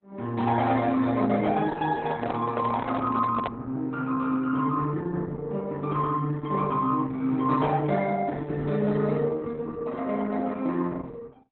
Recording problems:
lossy compression; Opus, log-spectral distance 3 dB, nothing above 3.8 kHz
handling noise; from 2 to 3.5 s; peak 0 dB vs average level

